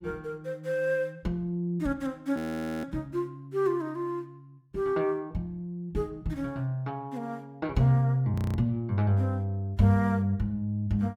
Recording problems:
audio freezing; at 2.5 s and at 8.5 s

